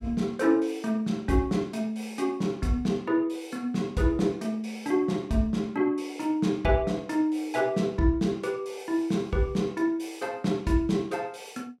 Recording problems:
none

